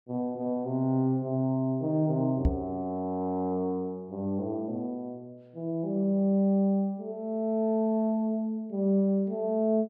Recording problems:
microphone bump; at 2.5 s; peak +6 dB vs average level

